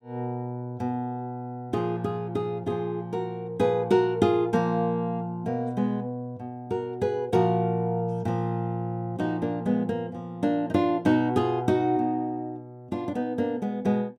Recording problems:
none

